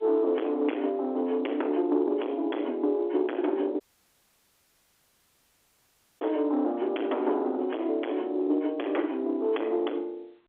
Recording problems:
telephone audio; 240 Hz to 3.1 kHz, G.711
distorted audio; soft clipping, signal-to-distortion ratio 3 dB
dropout; at 4 s for 2.5 s

